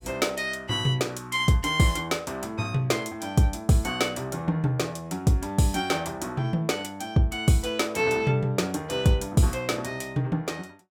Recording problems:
none

